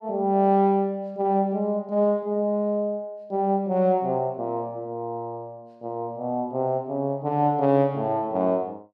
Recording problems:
none

